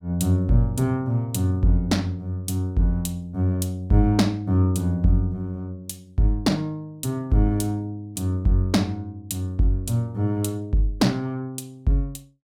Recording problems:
none

